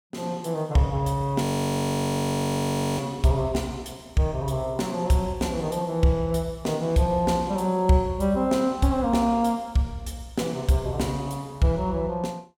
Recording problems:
frozen audio; at 1.5 s for 1.5 s

